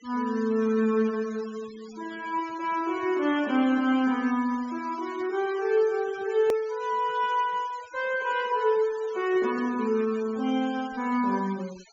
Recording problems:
treble cut off; nothing above 7.3 kHz
noise reduction artefacts; signal-to-artefact ratio 20 dB
edit click; at 6.5 s

